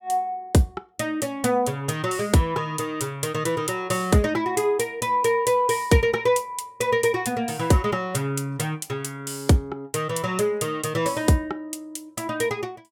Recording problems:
none

